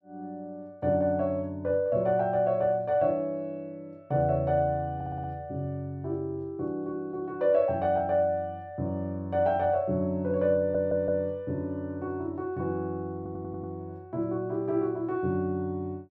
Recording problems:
audio stuttering; at 5 s, at 11 s and at 13 s

